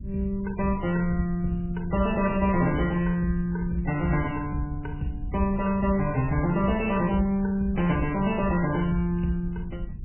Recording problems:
lossy codec; MP3, log-spectral distance 3 dB, nothing above 2.8 kHz
low-frequency rumble; below 110 Hz, SNR 12 dB

